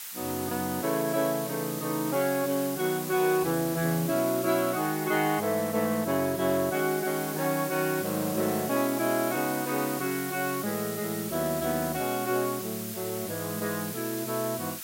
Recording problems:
background hiss; SNR 8 dB

